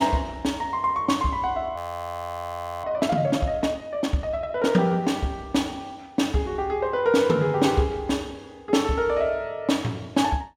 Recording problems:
frozen audio; at 2 s for 1 s

